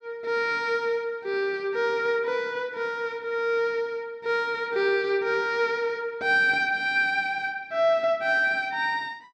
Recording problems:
none

